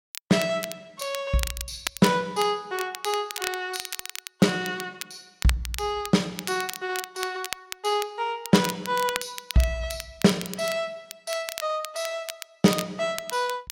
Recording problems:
crackling; vinyl, SNR 9 dB

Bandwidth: 16 kHz